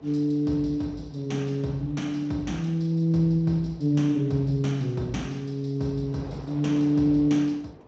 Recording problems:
codec artefacts; Speex, log-spectral distance 2 dB, nothing above 16.5 kHz
electrical hum; 50 Hz, harmonics up to 500 Hz, SNR 29 dB
wind on the microphone; below 780 Hz, SNR 23 dB

